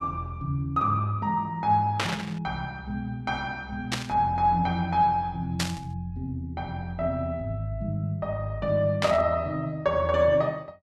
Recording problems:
burst of static; 4 times, first at 2 s; peak +4 dB vs average level

